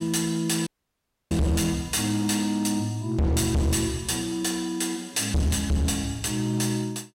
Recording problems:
distorted audio; hard clipping, signal-to-distortion ratio 6 dB
audio cutting out; at 0.5 s for 0.5 s

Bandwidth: 16 kHz